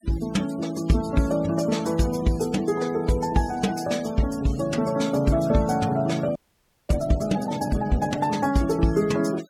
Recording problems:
denoising artefacts; signal-to-artefact ratio 20 dB
audio freezing; at 6.5 s for 0.5 s

